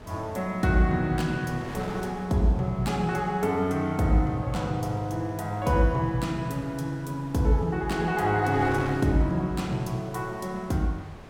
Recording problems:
wind noise; below 1.1 kHz, SNR 17 dB

